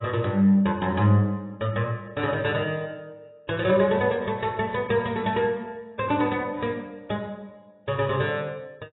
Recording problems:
lossy compression; AAC, log-spectral distance 3 dB, nothing above 3.8 kHz

